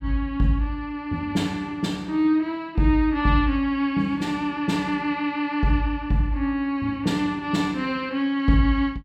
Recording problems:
none

